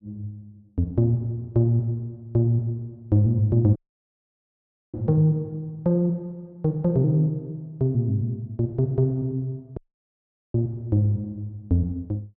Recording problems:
audio cutting out; at 4 s for 1 s and at 10 s for 1 s

